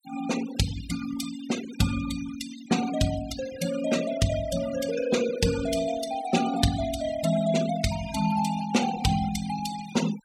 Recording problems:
noise reduction artefacts; signal-to-artefact ratio 11 dB

